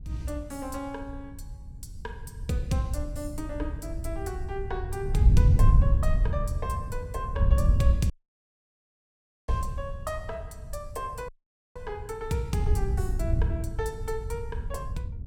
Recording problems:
wind noise; below 94 Hz, SNR -5 dB
audio cutting out; at 8 s for 1.5 s and at 11 s

